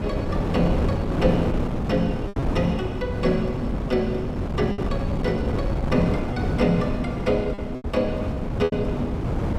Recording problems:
wind noise; below 340 Hz, SNR 0 dB
lost packets; 4% of the sound replaced, filled with repeated pitch periods

